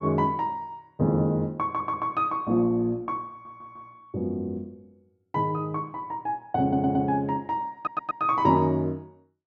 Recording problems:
stutter; 4 times, first at 1.5 s

